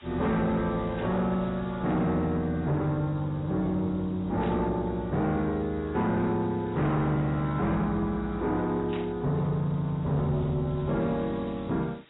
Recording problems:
lossy compression; AAC, log-spectral distance 10 dB, nothing above 3.8 kHz
distorted audio; soft clipping, signal-to-distortion ratio 11 dB
hiss; SNR 27 dB
static burst; at 1 s, at 4.5 s and at 9 s; peak -11 dB vs average level

